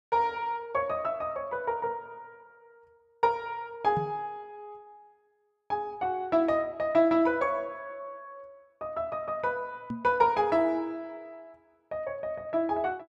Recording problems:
microphone bump; at 4 s and at 10 s; peak -1 dB vs average level

